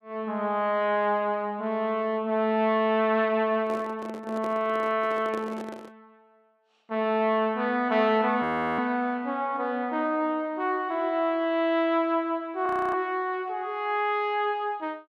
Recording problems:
handling noise; from 3.5 to 6 s; peak -8 dB vs average level
frozen audio; at 8.5 s and at 13 s

